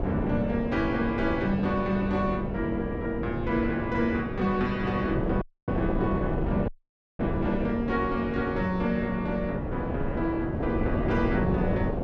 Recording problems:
wind on the microphone; below 460 Hz, SNR 2 dB
audio cutting out; at 5.5 s and at 6.5 s for 0.5 s

